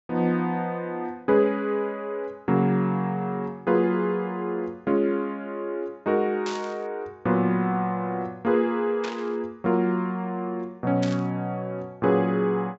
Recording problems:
low-pass filter; nothing above 7.7 kHz
static burst; at 6.5 s, at 9 s and at 11 s; peak -6 dB vs average level

